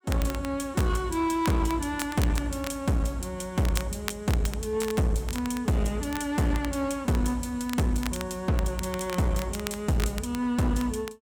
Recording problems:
distortion; hard clipping, uneven, signal-to-distortion ratio 9 dB
crackle; vinyl, SNR 13 dB

